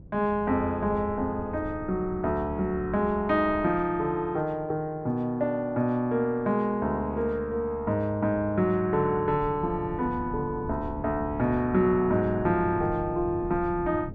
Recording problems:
wind noise; below 200 Hz, SNR 14 dB

